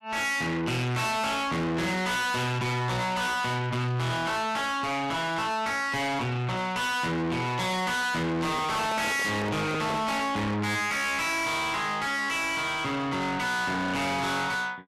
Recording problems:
distortion; soft clipping, signal-to-distortion ratio 6 dB
handling noise; from 8.5 to 10 s; peak -1 dB vs average level

